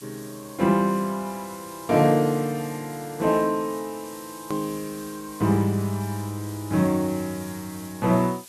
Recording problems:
hiss; slope +1 dB per octave, SNR 18 dB
edit click; at 4.5 s

